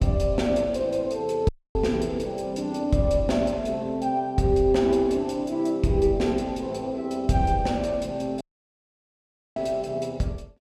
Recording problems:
audio cutting out; at 1.5 s and at 8.5 s for 1 s

